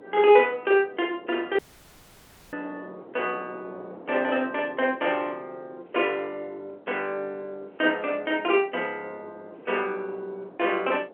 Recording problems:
telephone audio; 300 Hz to 3.4 kHz, G.711
wind on the microphone; below 620 Hz, SNR 21 dB
dropout; at 1.5 s for 1 s

